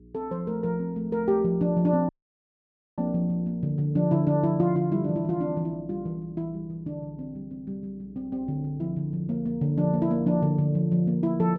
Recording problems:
hum; 60 Hz, harmonics up to 420 Hz, SNR 26 dB
dropout; at 2 s for 1 s

